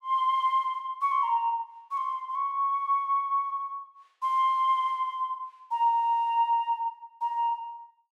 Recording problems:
none

